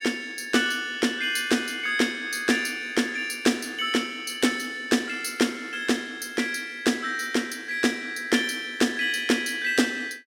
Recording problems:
none

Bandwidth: 16.5 kHz